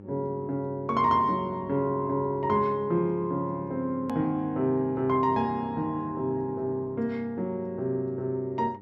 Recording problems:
low-pass filter; nothing above 8 kHz
hum; 50 Hz, harmonics up to 900 Hz, SNR 18 dB
edit click; at 4 s

